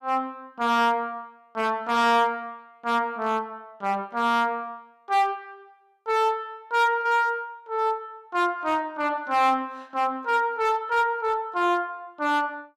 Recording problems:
distorted audio; hard clipping, uneven, signal-to-distortion ratio 10 dB

